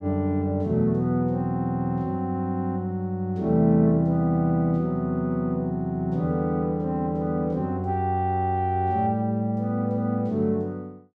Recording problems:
none

